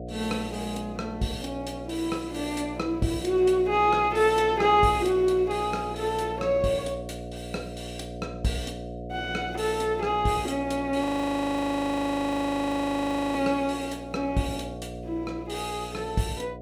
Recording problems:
hum; 60 Hz, harmonics up to 720 Hz, SNR 12 dB
frozen audio; at 11 s for 2.5 s

